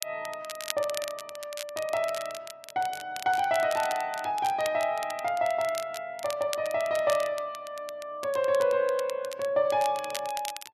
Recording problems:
crackling; vinyl, SNR 12 dB

